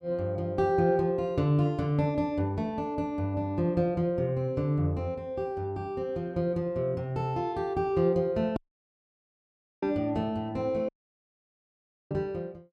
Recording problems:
audio cutting out; at 8.5 s for 1.5 s and at 11 s for 1 s

